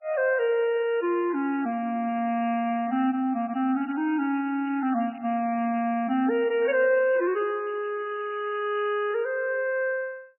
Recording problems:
lossy codec; MP3, log-spectral distance 5 dB, nothing above 2.6 kHz
crackling; from 4 to 6 s and from 6.5 to 9 s; loose cable, SNR 27 dB

